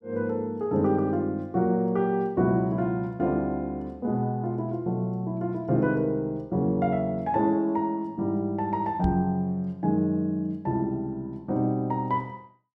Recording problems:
knock on the microphone; at 9 s; peak +1 dB vs average level

